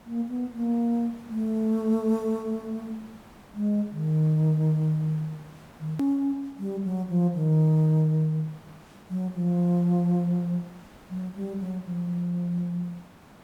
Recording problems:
hiss; slope -6 dB per octave, SNR 24 dB
hard cut with a click; at 6 s

